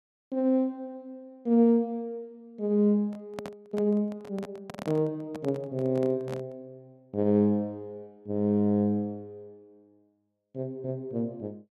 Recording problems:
microphone handling noise; from 3 to 6.5 s; peak -6 dB vs average level

